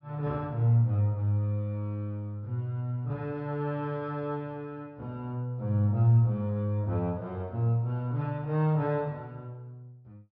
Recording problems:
treble cut off; nothing above 5.3 kHz

